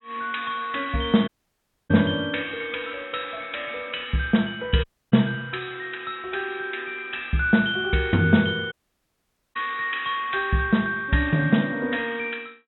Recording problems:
treble missing; nothing above 3.9 kHz
dropout; at 1.5 s for 0.5 s, at 5 s and at 8.5 s for 1 s

